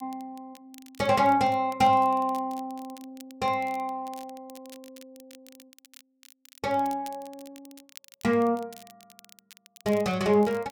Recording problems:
crackle; vinyl, SNR 26 dB

